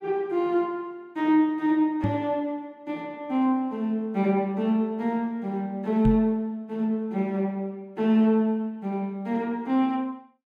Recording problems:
microphone bump; at 2 s and at 6 s; peak +3 dB vs average level

